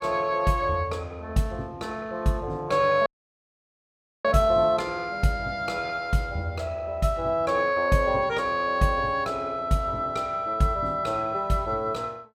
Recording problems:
audio cutting out; at 3 s for 1 s

